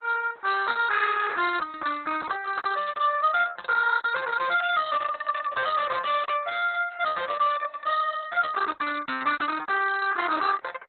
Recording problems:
codec artefacts; Opus, log-spectral distance 5 dB, nothing above 4 kHz
distorted audio; soft clipping, signal-to-distortion ratio 11 dB
packet loss; 9% of the sound replaced, filled with repeated pitch periods

